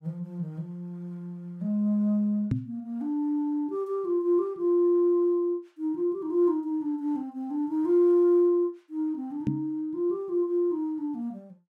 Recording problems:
microphone bump; at 2.5 s and at 9.5 s; peak +3 dB vs average level

